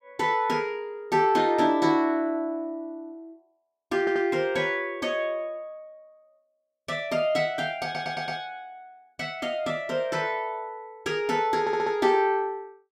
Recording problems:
audio stuttering; at 4 s, at 8 s and at 12 s

